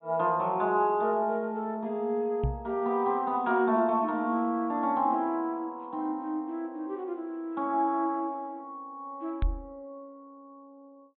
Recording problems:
treble missing; nothing above 4 kHz
microphone thump; at 2.5 s and at 9.5 s; peak +3 dB vs average level

